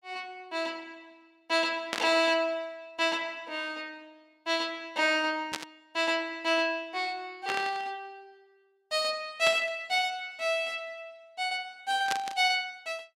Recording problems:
burst of static; 5 times, first at 2 s; peak +2 dB vs average level

